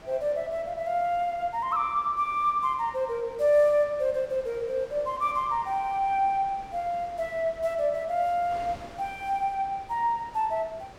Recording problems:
wind on the microphone; below 1.6 kHz, SNR 21 dB

